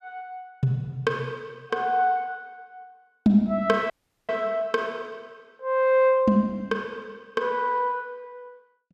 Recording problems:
audio cutting out; at 4 s

